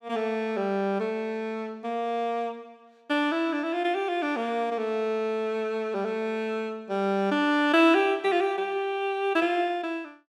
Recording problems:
none

